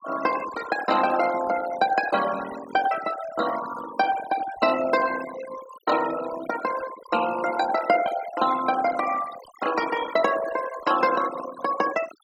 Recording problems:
noise reduction artefacts; signal-to-artefact ratio 11 dB

